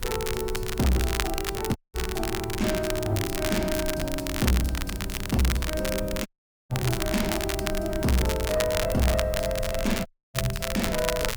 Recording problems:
distortion; soft clipping, signal-to-distortion ratio 10 dB
hiss; slope -3 dB per octave, SNR 24 dB
low-frequency rumble; below 90 Hz, SNR 9 dB
crackling; vinyl, SNR 5 dB
dropout; at 2 s, at 6.5 s and at 10 s

